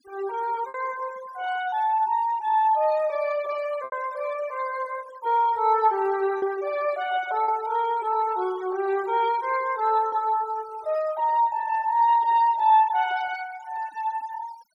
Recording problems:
noise reduction artefacts; signal-to-artefact ratio 19 dB
packet loss; 2% of the sound replaced, filled with repeated pitch periods

